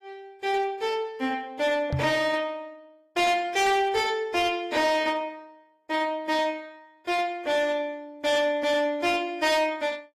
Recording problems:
lossy compression; AAC, log-spectral distance 2 dB
distorted audio; hard clipping, uneven, signal-to-distortion ratio 10 dB
knock on the microphone; at 2 s; peak +1 dB vs average level

